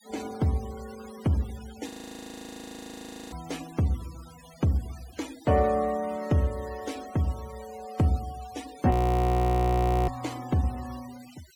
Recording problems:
denoising artefacts; signal-to-artefact ratio 19 dB
audio freezing; at 2 s for 1.5 s and at 9 s for 1 s

